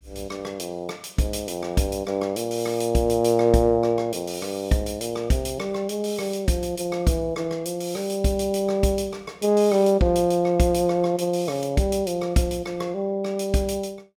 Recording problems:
none

